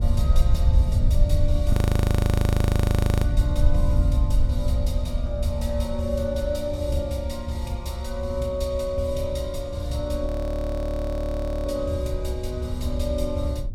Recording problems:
wind on the microphone; below 92 Hz, SNR -2 dB
frozen audio; at 1.5 s for 1.5 s and at 10 s for 1.5 s

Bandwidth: 16 kHz